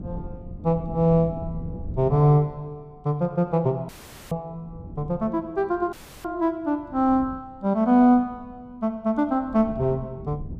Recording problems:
wind on the microphone; below 190 Hz, SNR 16 dB
audio cutting out; at 4 s and at 6 s

